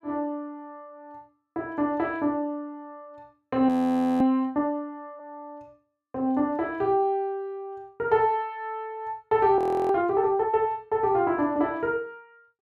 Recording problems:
audio freezing; at 3.5 s for 0.5 s and at 9.5 s

